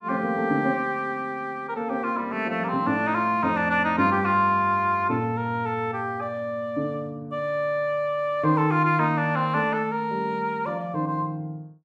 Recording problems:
none

